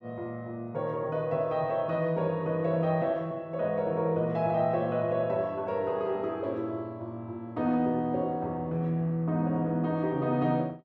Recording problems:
none

